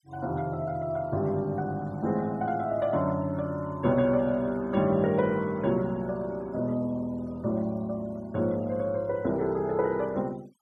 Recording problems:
noise reduction artefacts; signal-to-artefact ratio 27 dB

